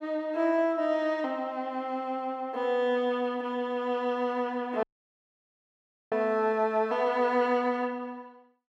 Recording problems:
dropout; at 5 s for 1.5 s

